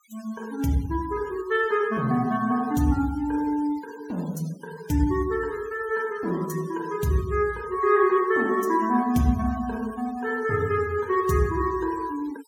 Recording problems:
denoising artefacts; signal-to-artefact ratio 24 dB

